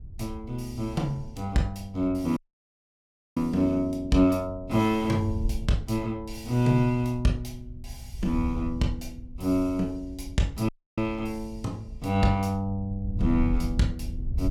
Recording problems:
wind on the microphone; below 86 Hz, SNR 10 dB
dropout; at 2.5 s for 1 s and at 11 s

